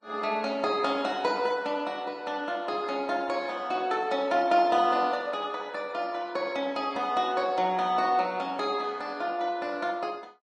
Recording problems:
lossy compression; Vorbis, log-spectral distance 2 dB

